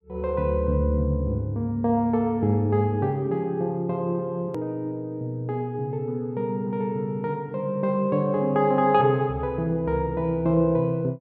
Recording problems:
hard cut with a click; at 4.5 s

